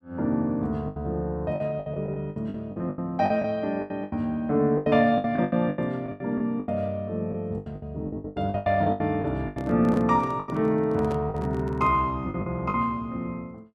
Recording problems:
packet loss; 16% of the sound replaced, filled with the last packet
microphone handling noise; from 9.5 to 12 s; peak -7 dB vs average level

